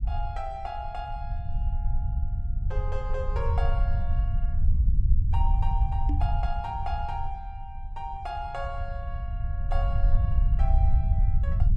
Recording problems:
rumble; below 74 Hz, SNR -9 dB
microphone bump; at 6 s; peak +5 dB vs average level

